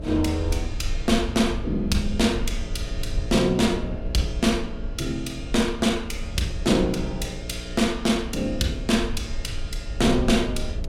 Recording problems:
hum; 60 Hz, harmonics up to 660 Hz, SNR 15 dB
rumble; below 66 Hz, SNR 9 dB

